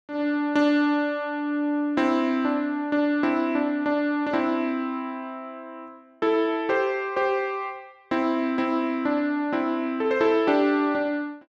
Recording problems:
none

